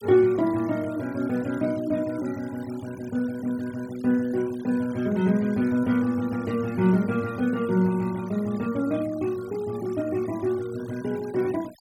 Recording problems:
noise reduction artefacts; signal-to-artefact ratio 22 dB

